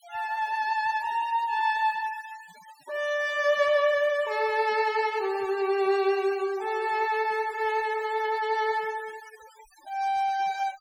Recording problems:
denoising artefacts; signal-to-artefact ratio 20 dB

